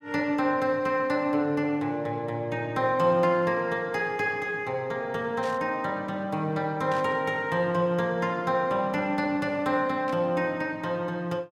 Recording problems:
burst of static; at 5.5 s, at 7 s and at 10 s; peak -11 dB vs average level

